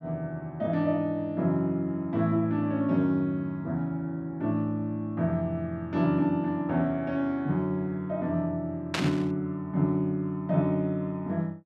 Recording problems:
static burst; at 9 s; peak +3 dB vs average level

